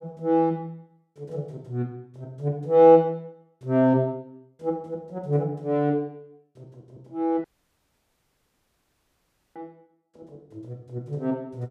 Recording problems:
dropout; at 7.5 s for 2 s

